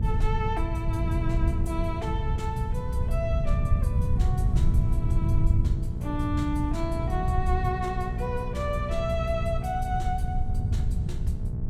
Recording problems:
hum; 60 Hz, harmonics up to 840 Hz, SNR 4 dB
rumble; below 110 Hz, SNR -4 dB
wind noise; below 180 Hz, SNR 12 dB

